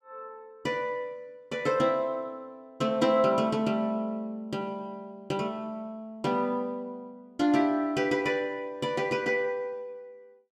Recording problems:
none

